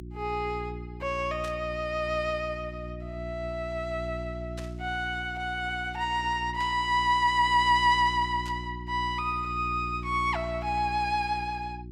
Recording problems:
hum; 60 Hz, harmonics up to 360 Hz, SNR 11 dB
static burst; 4 times, first at 1.5 s; peak -11 dB vs average level

